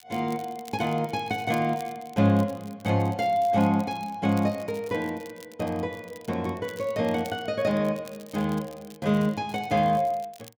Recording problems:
crackling; vinyl, SNR 23 dB

